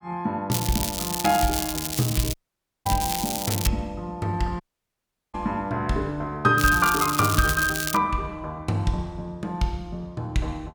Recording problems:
crackling; from 0.5 to 3.5 s and from 6.5 to 8 s; loose cable, SNR 4 dB
dropout; at 2.5 s for 0.5 s and at 4.5 s for 0.5 s

